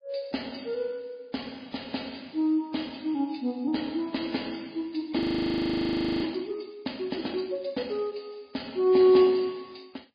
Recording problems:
codec artefacts; MP3, log-spectral distance 6 dB, nothing above 4.6 kHz
audio freezing; at 5 s for 1 s

